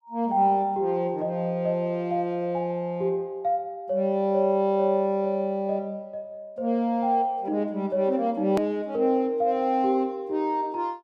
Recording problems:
edit click; at 8.5 s

